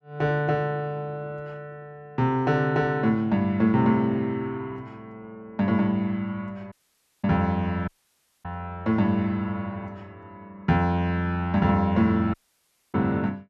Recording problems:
dropout; at 6.5 s for 0.5 s, at 8 s for 0.5 s and at 12 s for 0.5 s

